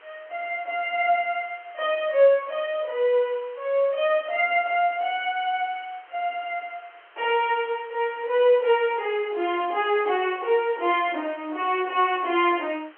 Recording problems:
phone line; 260 Hz to 3.2 kHz, G.711
background hiss; SNR 27 dB

